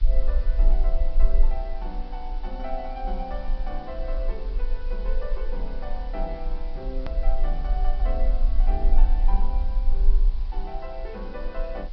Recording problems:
treble missing; nothing above 5.5 kHz
background hiss; SNR 17 dB
low-frequency rumble; below 36 Hz, strongest tone 18 Hz, SNR -9 dB
edit click; at 7 s

